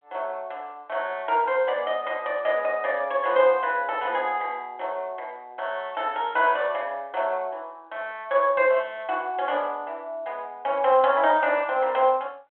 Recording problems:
phone line; 320 Hz to 3.4 kHz, G.726

